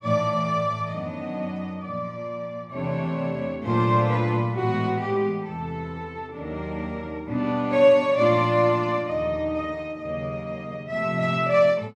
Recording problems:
none

